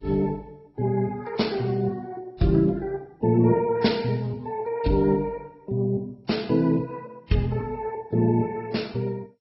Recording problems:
lossy compression; Vorbis, then MP2, log-spectral distance 3 dB, nothing above 5.5 kHz

